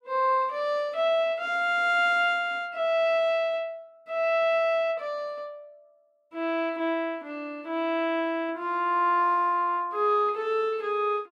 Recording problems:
none

